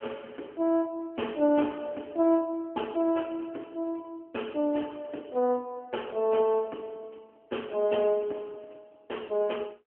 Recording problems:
telephone audio; 260 Hz to 3.2 kHz, AMR-NB

